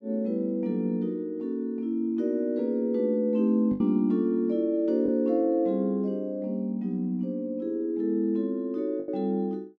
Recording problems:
lost packets; 1.9% of the sound replaced, filled with the last packet

